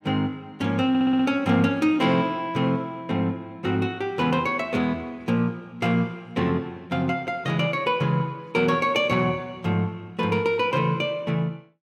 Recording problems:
audio stuttering; at 1 s

